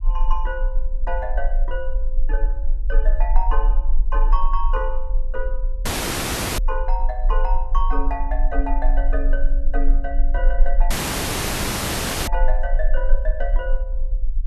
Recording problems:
low-frequency rumble; below 36 Hz, strongest tone 22 Hz, SNR -6 dB
audio cutting out; at 6 s for 0.5 s and at 11 s for 1.5 s

